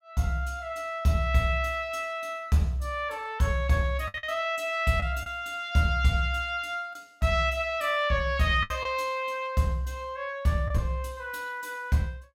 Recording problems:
packet loss; 3% of the sound replaced, filled with the last packet

